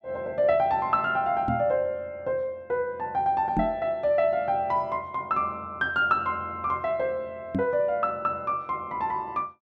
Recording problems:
microphone thump; at 1.5 s, at 3.5 s and at 7.5 s; peak +3 dB vs average level

